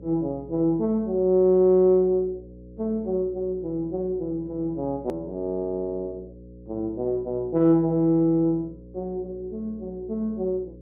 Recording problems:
electrical hum; 60 Hz, harmonics up to 540 Hz, SNR 20 dB
hard cut with a click; at 5 s

